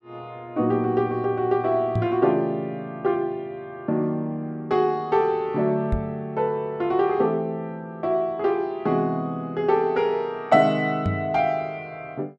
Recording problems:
knock on the microphone; at 2 s, at 6 s and at 11 s; peak +3 dB vs average level

